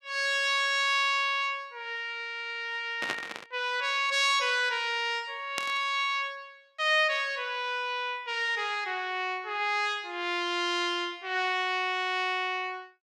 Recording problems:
burst of static; at 3 s and at 5.5 s; peak 0 dB vs average level

